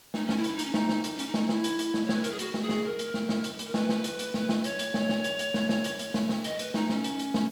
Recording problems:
background hiss; slope 0 dB per octave, SNR 25 dB

